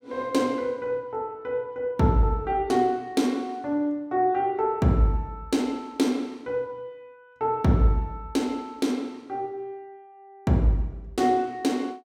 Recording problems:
none

